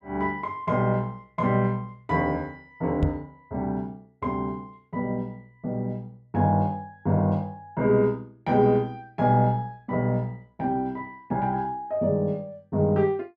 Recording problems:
knock on the microphone; at 3 s; peak +6 dB vs average level

